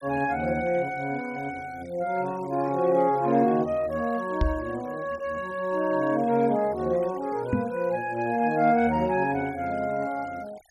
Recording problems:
noise reduction artefacts; signal-to-artefact ratio 23 dB
microphone bump; at 4.5 s and at 7.5 s; peak +4 dB vs average level

